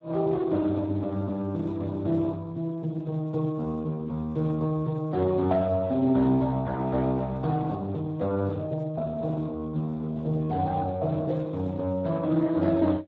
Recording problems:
lossy codec; Speex, log-spectral distance 2 dB

